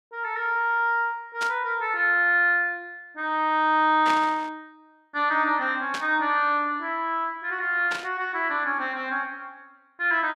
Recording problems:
static burst; 4 times, first at 1.5 s; peak -3 dB vs average level

